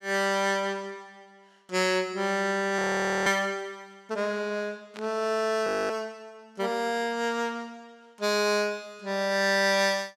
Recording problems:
audio freezing; at 3 s and at 5.5 s
burst of static; at 5 s; peak -13 dB vs average level

